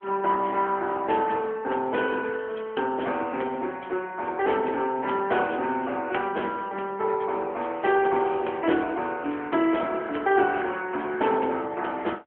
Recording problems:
phone line; 220 Hz to 3.2 kHz, AMR-NB

